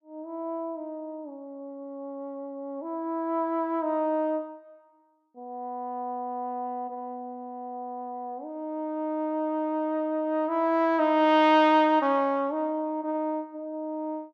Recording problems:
none

